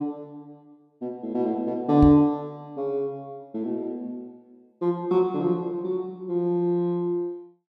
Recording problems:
microphone bump; at 2 s; peak +4 dB vs average level

